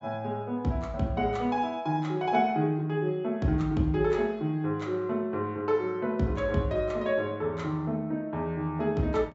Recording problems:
low-pass filter; nothing above 8 kHz

